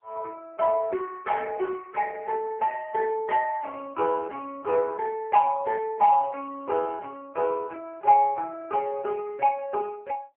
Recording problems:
phone line; 320 Hz to 2.9 kHz, AMR-NB

